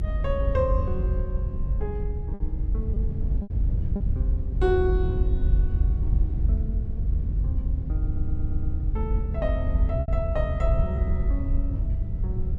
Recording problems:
rumble; below 76 Hz, SNR -6 dB
lost packets; 3% of the sound replaced, filled with repeated pitch periods
stutter; at 8 s

